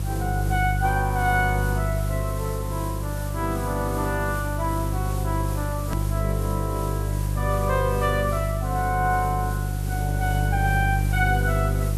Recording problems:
hum; 50 Hz, harmonics up to 500 Hz, SNR 0 dB
background hiss; slope -3 dB per octave, SNR 12 dB
edit click; at 6 s

